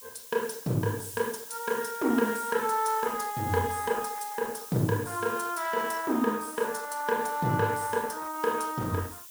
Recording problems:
codec artefacts; Opus, log-spectral distance 4 dB, nothing above 19 kHz
background hiss; slope +5 dB per octave, SNR 12 dB

